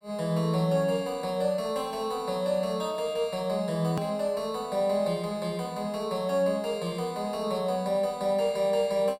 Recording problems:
edit click; at 4 s

